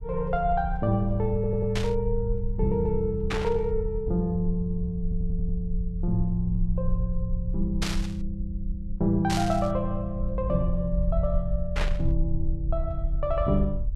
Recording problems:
low-frequency rumble; below 58 Hz, SNR 4 dB
audio stuttering; at 1.5 s and at 5 s
static burst; 5 times, first at 2 s; peak +2 dB vs average level

